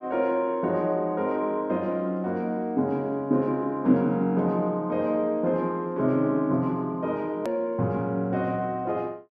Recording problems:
click at an edit; at 7.5 s

